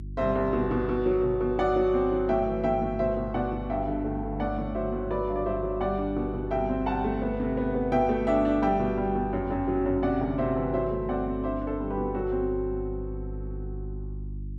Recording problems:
hum; 50 Hz, harmonics up to 350 Hz, SNR 11 dB

